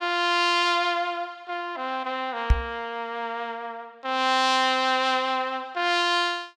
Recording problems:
microphone thump; at 2.5 s; peak +8 dB vs average level

